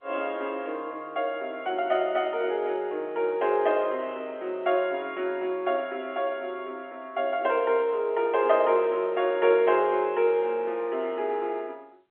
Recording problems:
phone line; 280 Hz to 3.4 kHz, G.711

